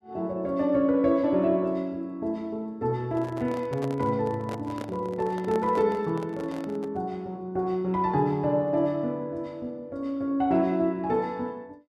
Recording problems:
handling noise; from 3 to 7 s; peak -6 dB vs average level

